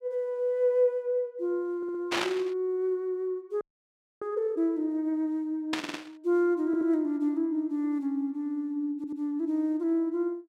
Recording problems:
stutter; 4 times, first at 2 s
static burst; at 2 s and at 5.5 s; peak +3 dB vs average level
audio freezing; at 3.5 s for 0.5 s

